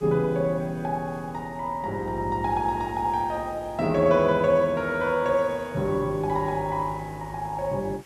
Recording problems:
background hiss; SNR 27 dB

